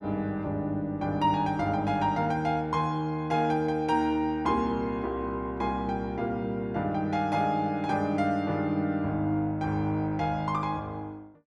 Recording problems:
none

